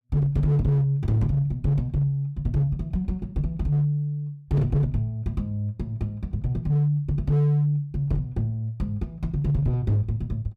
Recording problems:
distorted audio; hard clipping, signal-to-distortion ratio 11 dB

